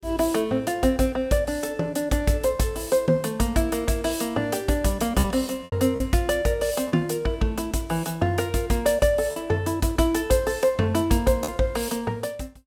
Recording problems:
packet loss; 2% of the sound replaced, filled with repeated pitch periods

